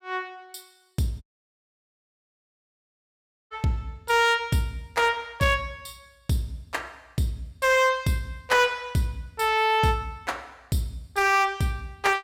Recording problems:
distorted audio; hard clipping, signal-to-distortion ratio 11 dB
audio cutting out; at 1 s for 2.5 s

